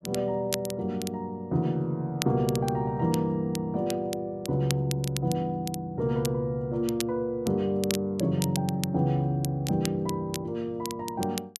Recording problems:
crackling; vinyl, SNR 11 dB

